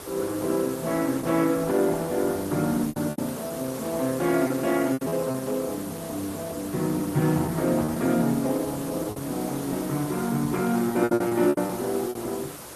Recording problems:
lossy codec; Opus, log-spectral distance 7 dB
hiss; slope -5 dB per octave, SNR 12 dB
packet loss; 7% of the sound replaced, filled with repeated pitch periods

